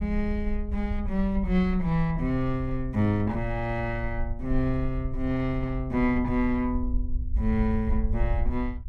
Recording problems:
rumble; below 58 Hz, SNR 6 dB

